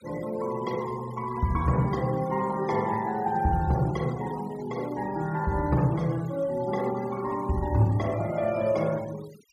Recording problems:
denoising artefacts; signal-to-artefact ratio 20 dB

